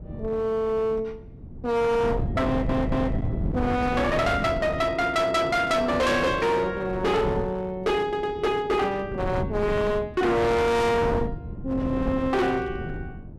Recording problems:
distortion; hard clipping, uneven, signal-to-distortion ratio 6 dB
wind on the microphone; below 260 Hz, SNR 7 dB
stutter; at 2.5 s and at 8 s

